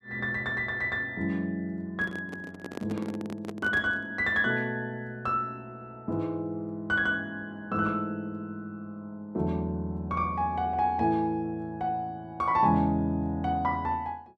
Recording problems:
handling noise; from 2 to 4 s; peak -3 dB vs average level

